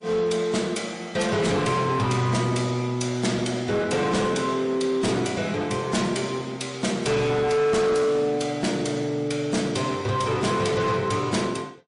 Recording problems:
codec artefacts; MP3, log-spectral distance 3 dB, nothing above 10.4 kHz
distortion; hard clipping, signal-to-distortion ratio 10 dB

